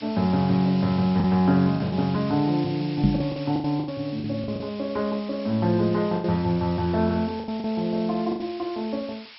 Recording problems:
lossy codec; MP2, log-spectral distance 10 dB
background hiss; SNR 18 dB
packet loss; 8% of the sound replaced, filled with the last packet
knock on the microphone; at 3 s; peak +8 dB vs average level

